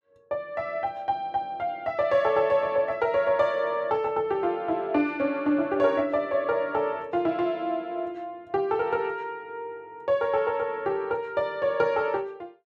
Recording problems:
none

